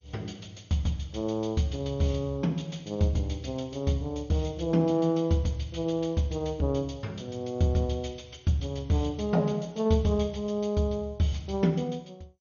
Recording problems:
lossy codec; MP2, log-spectral distance 2 dB, nothing above 6.7 kHz

